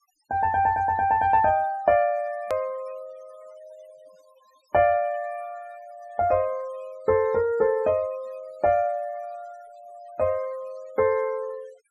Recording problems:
noise reduction artefacts; signal-to-artefact ratio 26 dB
hard cut with a click; at 2.5 s

